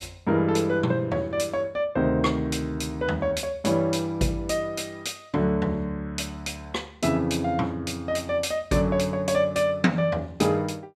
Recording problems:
none

